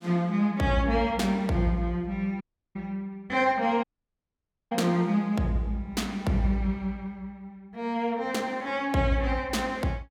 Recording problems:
dropout; at 2.5 s and at 4 s for 1 s

